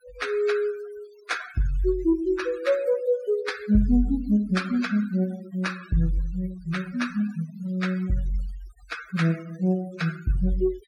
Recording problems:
denoising artefacts; signal-to-artefact ratio 18 dB

